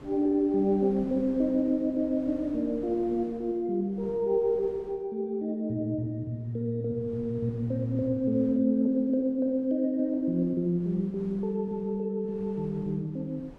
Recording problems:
wind noise; below 480 Hz, SNR 23 dB

